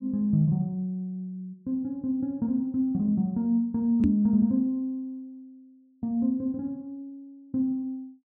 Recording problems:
microphone bump; at 4 s; peak +4 dB vs average level

